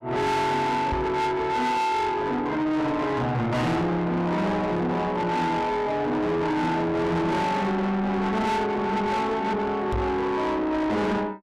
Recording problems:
distortion; soft clipping, signal-to-distortion ratio 7 dB
microphone thump; at 1 s and at 10 s; peak +1 dB vs average level

